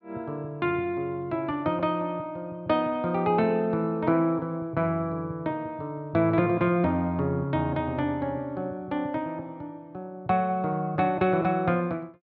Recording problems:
none

